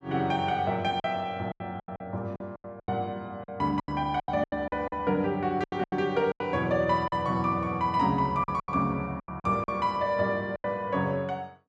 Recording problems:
lost packets; 13% of the sound replaced, filled with silence

